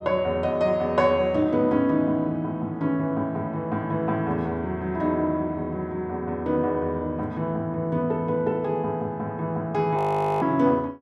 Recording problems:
frozen audio; at 10 s

